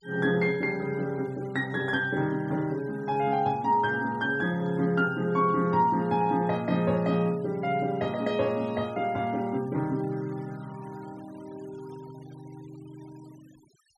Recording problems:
noise reduction artefacts; signal-to-artefact ratio 26 dB

